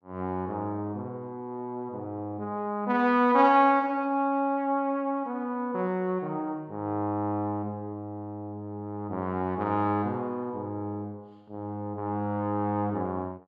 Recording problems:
none

